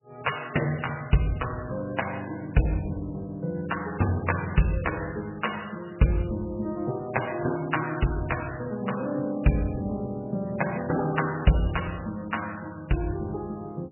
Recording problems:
codec artefacts; MP3, log-spectral distance 6 dB, nothing above 2.9 kHz

